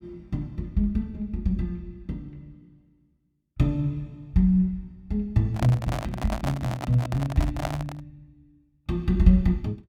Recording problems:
handling noise; from 5.5 to 8 s; peak +1 dB vs average level

